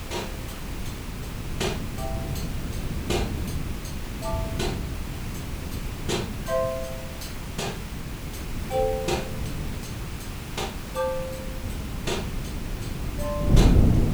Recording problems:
background hiss; slope -2 dB per octave, SNR 9 dB
wind noise; below 200 Hz, SNR -1 dB

